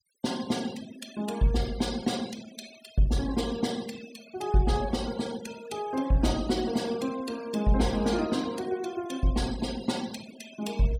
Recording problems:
denoising artefacts; signal-to-artefact ratio 15 dB

